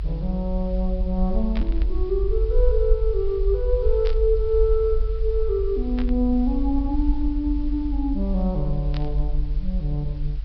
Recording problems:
low-pass filter; nothing above 5.5 kHz
hiss; SNR 28 dB
low-frequency rumble; below 48 Hz, SNR 1 dB
burst of static; 4 times, first at 1.5 s; peak -7 dB vs average level

